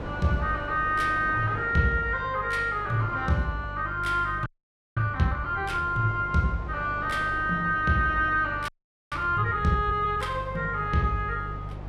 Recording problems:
hum; 50 Hz, harmonics up to 350 Hz, SNR 13 dB
wind noise; below 840 Hz, SNR 16 dB
audio freezing; at 4.5 s for 0.5 s and at 8.5 s

